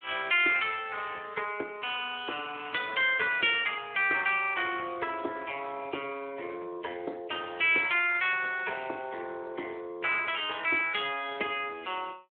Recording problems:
telephone audio; 300 Hz to 3.6 kHz, Speex

